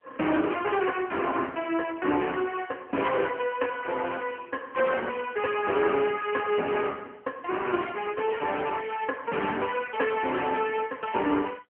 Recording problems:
phone line; 220 Hz to 3.1 kHz, AMR-NB

